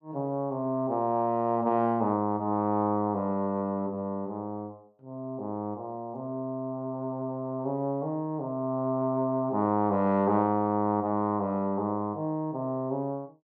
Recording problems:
none

